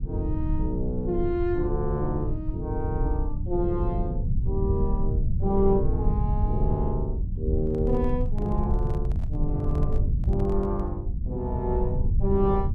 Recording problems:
low-frequency rumble; below 98 Hz, SNR -1 dB
microphone handling noise; from 7.5 to 11 s; peak -12 dB vs average level

